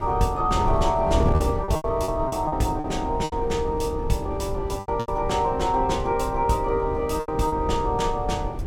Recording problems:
wind on the microphone; below 190 Hz, SNR 6 dB
packet loss; 8% of the sound replaced, filled with repeated pitch periods

